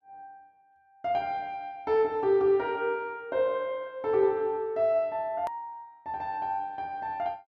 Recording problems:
click at an edit; at 5.5 s

